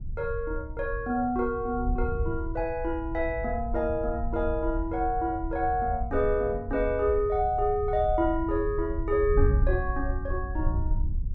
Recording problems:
wind on the microphone; below 78 Hz, SNR 5 dB

